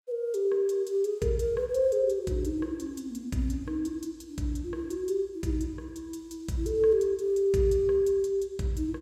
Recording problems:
none

